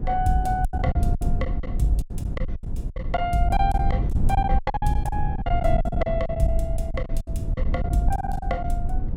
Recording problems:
low-frequency rumble; below 86 Hz, SNR 0 dB
lost packets; 17% of the sound replaced, filled with silence

